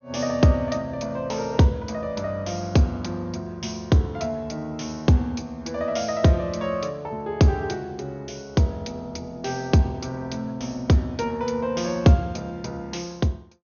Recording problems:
treble cut off; nothing above 6.6 kHz

